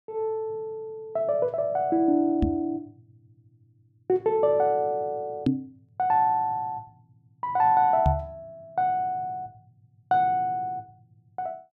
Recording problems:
knock on the microphone; at 2.5 s, at 5.5 s and at 8 s; peak +6 dB vs average level

